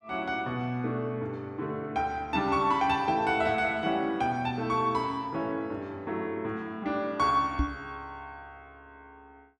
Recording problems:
microphone thump; at 7.5 s; peak +4 dB vs average level

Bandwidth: 13.5 kHz